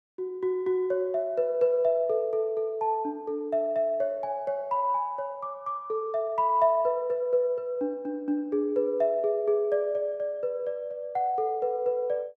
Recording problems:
none

